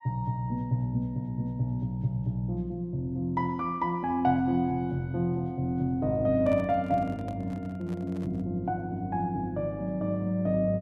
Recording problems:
handling noise; from 6.5 to 8.5 s; peak -10 dB vs average level

